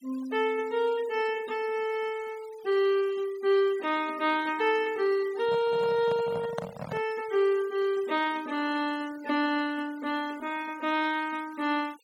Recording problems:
denoising artefacts; signal-to-artefact ratio 21 dB
handling noise; from 5.5 to 7 s; peak -2 dB vs average level

